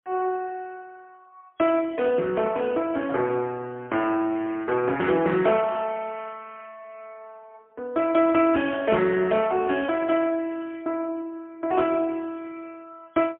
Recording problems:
telephone audio; 280 Hz to 3.3 kHz, AMR-NB, then MP3

